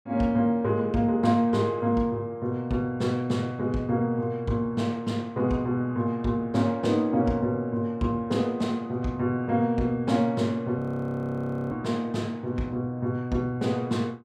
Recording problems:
frozen audio; at 11 s for 1 s

